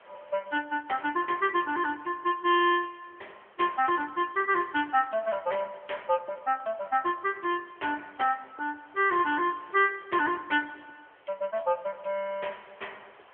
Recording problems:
telephone audio; 370 Hz to 3.3 kHz, AMR-NB
hiss; SNR 28 dB

